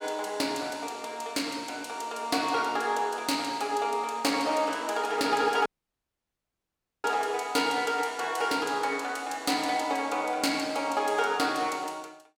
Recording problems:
audio cutting out; at 5.5 s for 1.5 s

